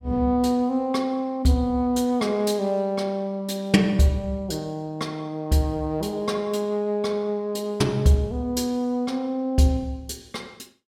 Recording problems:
none

